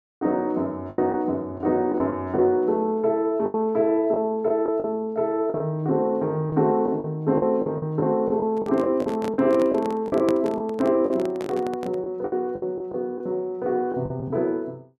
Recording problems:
lost packets; 9% of the sound replaced, filled with the last packet
microphone handling noise; from 8.5 to 12 s; peak -1 dB vs average level

